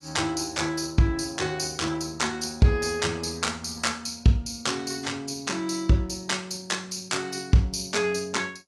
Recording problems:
lossy compression; AAC, log-spectral distance 4 dB, nothing above 11.3 kHz

